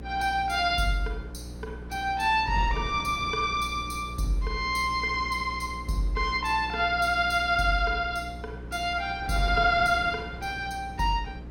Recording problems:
hum; 60 Hz, harmonics up to 540 Hz, SNR 14 dB
wind on the microphone; below 500 Hz, SNR 18 dB

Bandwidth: 17.5 kHz